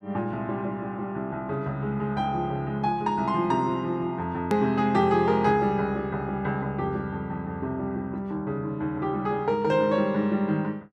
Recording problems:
edit click; at 4.5 s

